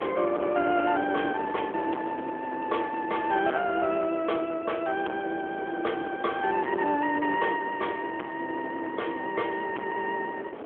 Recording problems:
phone line; 260 Hz to 3.3 kHz, AMR-NB
distortion; soft clipping, signal-to-distortion ratio 8 dB
wind on the microphone; below 770 Hz, SNR 10 dB

